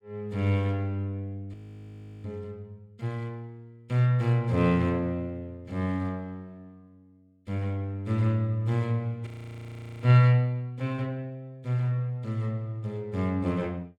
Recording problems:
audio freezing; at 1.5 s for 0.5 s and at 9.5 s for 1 s

